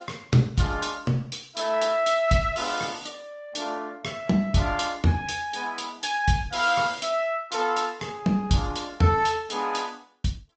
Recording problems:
treble missing; nothing above 8 kHz
lossy compression; Opus, log-spectral distance 4 dB

